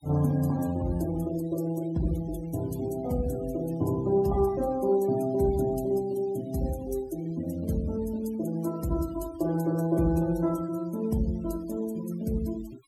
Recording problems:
noise reduction artefacts; signal-to-artefact ratio 20 dB

